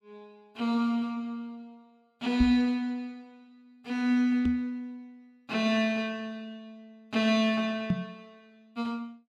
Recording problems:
microphone thump; at 2.5 s, at 4.5 s and at 8 s; peak +5 dB vs average level

